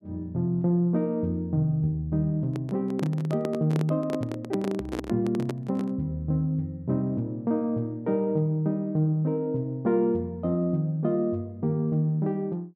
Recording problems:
handling noise; from 2.5 to 6 s; peak -1 dB vs average level

